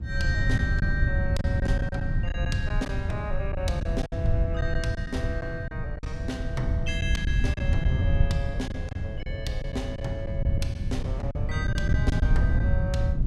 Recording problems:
wind noise; below 110 Hz, SNR -5 dB
lost packets; 8% of the sound replaced, filled with silence

